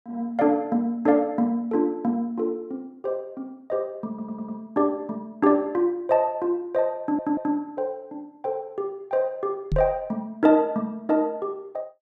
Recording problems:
stutter; at 4 s and at 7 s
microphone bump; at 9.5 s; peak +2 dB vs average level

